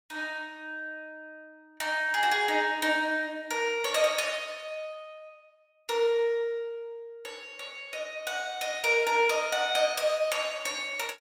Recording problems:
none

